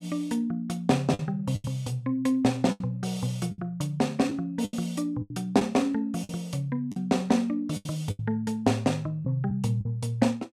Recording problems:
packet loss; 7% of the sound replaced, filled with the last packet

